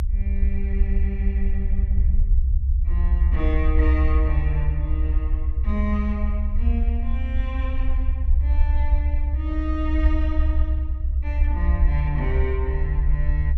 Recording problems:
rumble; below 66 Hz, SNR -8 dB

